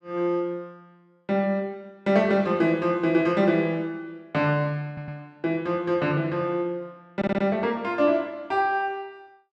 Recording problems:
audio stuttering; at 5 s and at 7 s

